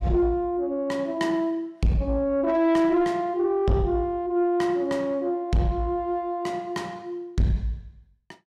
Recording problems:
distortion; soft clipping, signal-to-distortion ratio 10 dB

